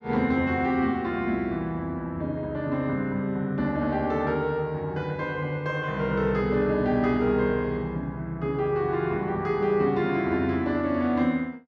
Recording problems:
none

